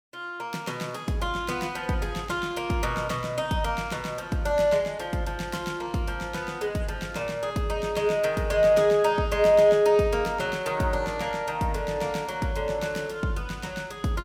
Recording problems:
none

